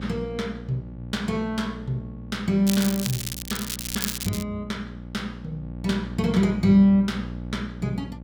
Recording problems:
hum; 60 Hz, harmonics up to 840 Hz, SNR 12 dB
crackling; from 2.5 to 4.5 s; loose cable, SNR 5 dB

